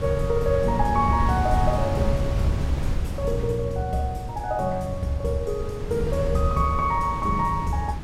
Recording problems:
wind on the microphone; below 130 Hz, SNR 4 dB

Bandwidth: 16.5 kHz